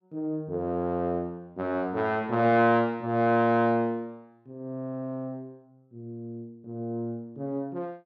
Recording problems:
none

